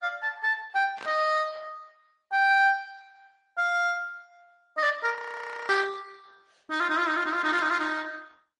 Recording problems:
lossy codec; Opus, then MP3, log-spectral distance 4 dB, nothing above 9 kHz
static burst; at 1 s, at 5.5 s and at 7.5 s; peak -11 dB vs average level
audio freezing; at 5 s for 0.5 s

